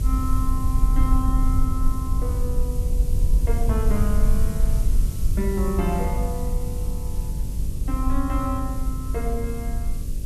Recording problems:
hum; 50 Hz, harmonics up to 450 Hz, SNR 3 dB
background hiss; SNR 12 dB
low-frequency rumble; below 62 Hz, SNR -4 dB

